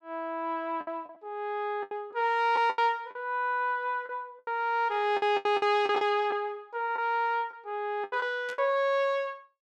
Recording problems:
lost packets; 9% of the sound replaced, filled with the last packet
static burst; at 8.5 s; peak -12 dB vs average level

